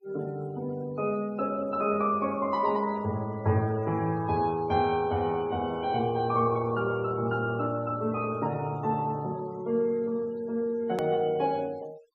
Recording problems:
noise reduction artefacts; signal-to-artefact ratio 24 dB
click at an edit; at 11 s

